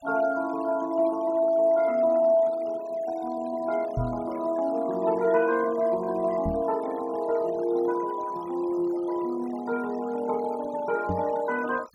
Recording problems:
noise reduction artefacts; signal-to-artefact ratio 20 dB
microphone bump; at 4 s, at 6.5 s and at 11 s; peak 0 dB vs average level

